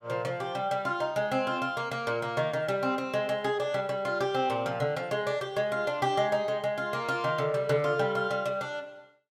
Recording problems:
none

